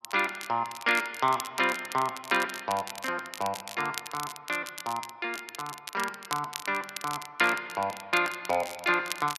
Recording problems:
crackling; vinyl, SNR 11 dB

